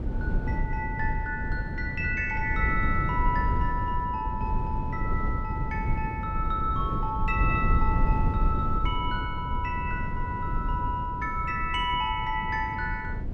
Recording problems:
low-frequency rumble; below 120 Hz, SNR 1 dB

